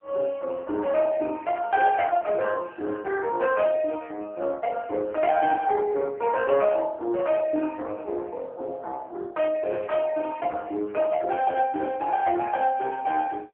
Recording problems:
telephone audio; 280 Hz to 2.3 kHz, AMR-NB

